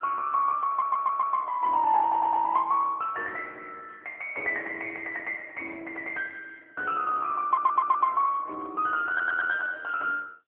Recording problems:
telephone audio; 300 Hz to 3 kHz, AMR-NB
audio stuttering; 4 times, first at 0.5 s

